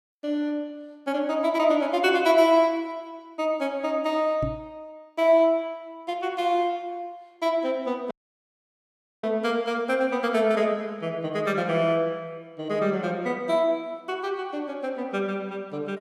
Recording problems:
microphone thump; at 4.5 s; peak -2 dB vs average level
audio cutting out; at 8 s for 1 s

